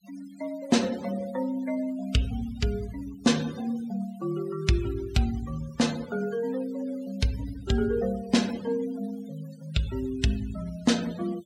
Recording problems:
noise reduction artefacts; signal-to-artefact ratio 17 dB

